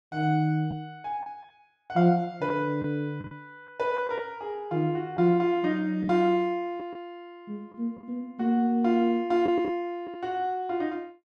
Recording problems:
packet loss; 4% of the sound replaced, filled with the last packet

